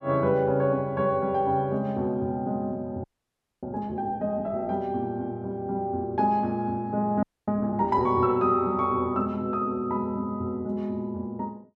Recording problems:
frozen audio; at 3 s for 0.5 s and at 7 s

